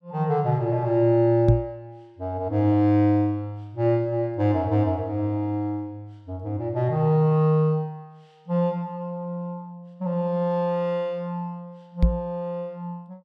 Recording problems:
microphone thump; at 1.5 s and at 12 s; peak +8 dB vs average level

